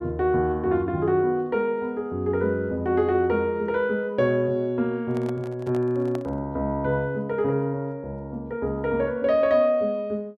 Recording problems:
microphone handling noise; from 5 to 6.5 s; peak -9 dB vs average level

